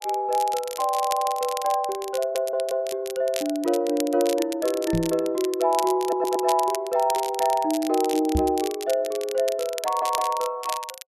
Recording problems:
crackling; vinyl, SNR 12 dB
stutter; 4 times, first at 1 s
microphone thump; at 5 s and at 8.5 s; peak +2 dB vs average level

